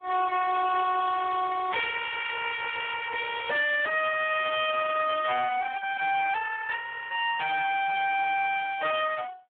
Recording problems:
telephone audio; 950 Hz to 2.3 kHz, Speex
distortion; hard clipping, signal-to-distortion ratio 7 dB

